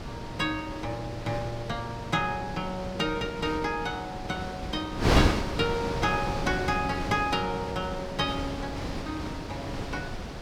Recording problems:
wind noise; below 820 Hz, SNR 2 dB

